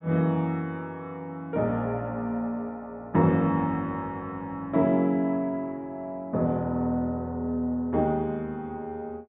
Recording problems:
treble cut off; nothing above 3.7 kHz

